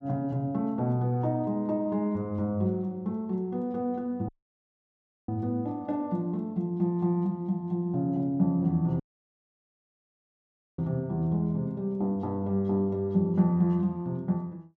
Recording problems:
dropout; at 4.5 s for 1 s and at 9 s for 2 s

